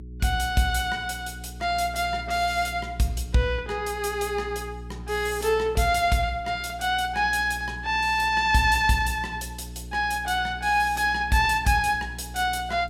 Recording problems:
electrical hum; 60 Hz, harmonics up to 420 Hz, SNR 15 dB

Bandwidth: 16.5 kHz